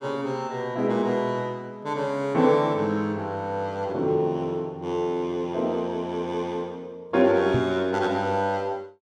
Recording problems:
microphone thump; at 7.5 s; peak +3 dB vs average level

